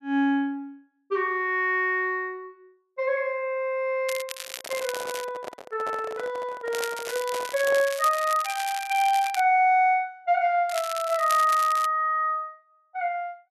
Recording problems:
crackling; from 4 to 5.5 s, from 6.5 to 9.5 s and from 11 to 12 s; loose cable, SNR 11 dB
microphone handling noise; from 4.5 to 8 s; peak -7 dB vs average level

